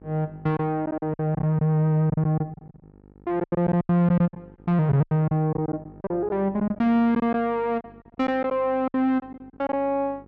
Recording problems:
hum; 50 Hz, harmonics up to 1.4 kHz, SNR 26 dB
lost packets; 14% of the sound replaced, filled with silence

